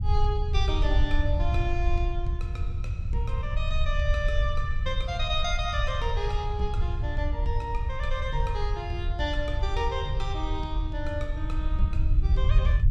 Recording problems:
low-frequency rumble; below 74 Hz, SNR -3 dB

